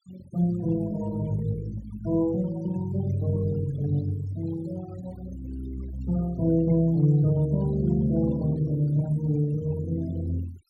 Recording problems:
denoising artefacts; signal-to-artefact ratio 22 dB

